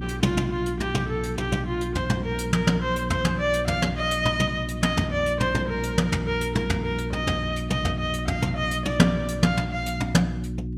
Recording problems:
hum; 60 Hz, harmonics up to 360 Hz, SNR 6 dB

